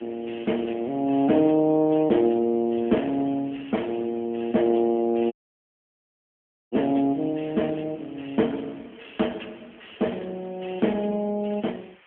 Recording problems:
phone line; 170 Hz to 3.2 kHz, AMR-NB
background hiss; SNR 27 dB
audio cutting out; at 5.5 s for 1.5 s

